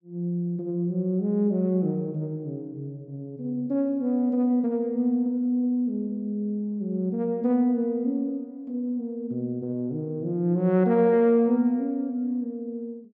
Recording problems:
treble cut off; nothing above 7.9 kHz

